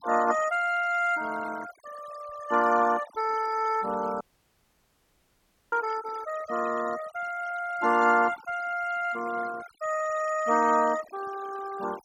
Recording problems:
noise reduction artefacts; signal-to-artefact ratio 17 dB
audio cutting out; at 4 s for 1.5 s

